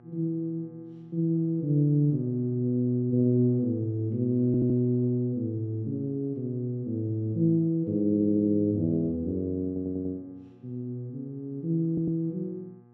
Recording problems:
electrical hum; 60 Hz, harmonics up to 1.3 kHz, SNR 28 dB
stutter; 4 times, first at 4.5 s

